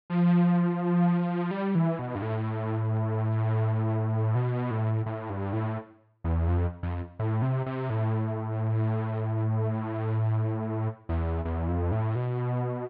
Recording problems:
treble cut off; nothing above 5.5 kHz

